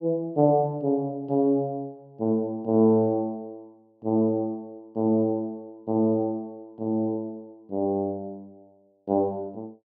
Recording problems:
none

